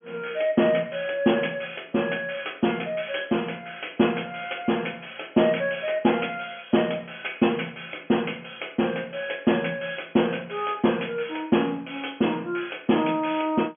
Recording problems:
treble missing; nothing above 3.4 kHz

